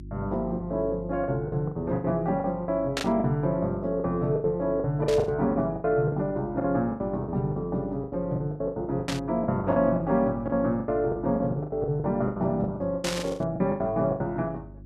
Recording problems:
hum; 50 Hz, harmonics up to 350 Hz, SNR 17 dB
packet loss; 18% of the sound replaced, filled with the last packet
burst of static; 4 times, first at 3 s; peak +2 dB vs average level

